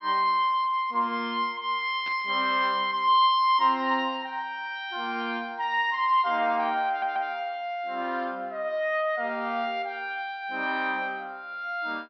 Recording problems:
low-pass filter; nothing above 6 kHz
static burst; at 2 s; peak -13 dB vs average level
audio stuttering; at 7 s

